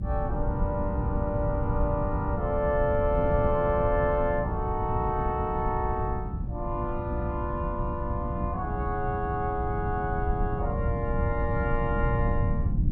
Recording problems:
hum; 60 Hz, harmonics up to 300 Hz, SNR 10 dB
low-frequency rumble; below 130 Hz, SNR 3 dB
wind on the microphone; below 220 Hz, SNR 14 dB

